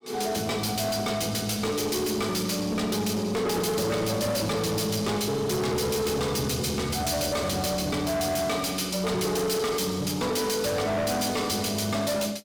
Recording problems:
distortion; hard clipping, uneven, signal-to-distortion ratio 7 dB

